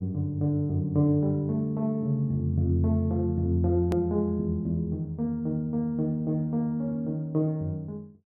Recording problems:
edit click; at 4 s

